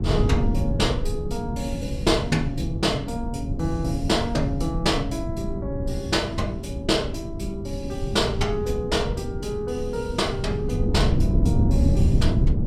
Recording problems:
rumble; below 160 Hz, SNR 0 dB
wind on the microphone; below 200 Hz, SNR 14 dB

